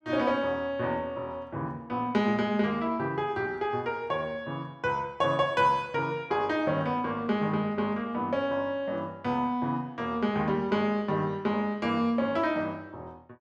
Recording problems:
none

